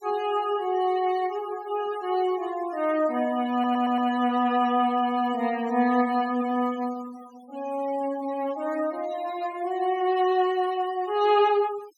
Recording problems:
denoising artefacts; signal-to-artefact ratio 20 dB
stutter; at 3.5 s

